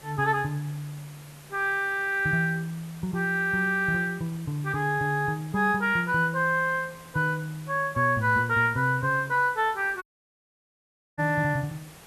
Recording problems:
background hiss; slope -3 dB per octave, SNR 22 dB
audio cutting out; at 10 s for 1 s

